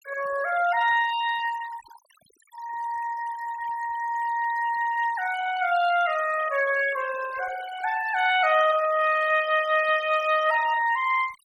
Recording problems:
noise reduction artefacts; signal-to-artefact ratio 16 dB

